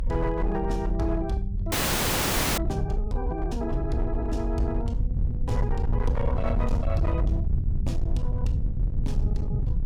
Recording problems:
distorted audio; hard clipping, signal-to-distortion ratio 10 dB
low-frequency rumble; below 84 Hz, SNR -2 dB
audio freezing; at 1.5 s for 1 s

